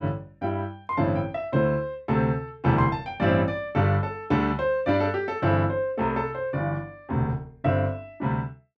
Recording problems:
none

